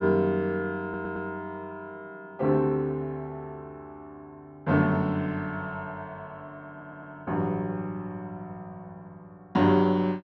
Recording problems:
audio stuttering; at 1 s and at 6.5 s

